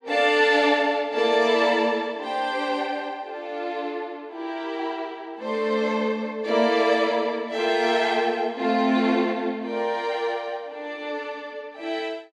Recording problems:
none

